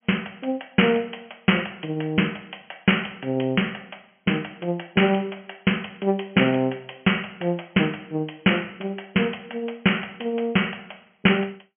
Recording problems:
treble missing; nothing above 3.1 kHz

